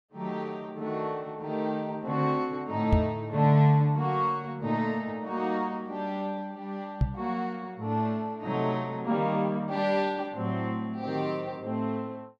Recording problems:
microphone thump; at 3 s and at 7 s; peak +8 dB vs average level

